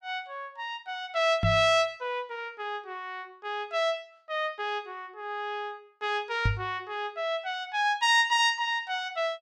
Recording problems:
microphone thump; at 1.5 s and at 6.5 s; peak +5 dB vs average level

